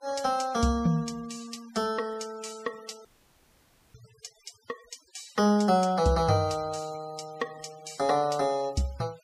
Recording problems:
denoising artefacts; signal-to-artefact ratio 23 dB
audio cutting out; at 3 s for 1 s

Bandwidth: 15 kHz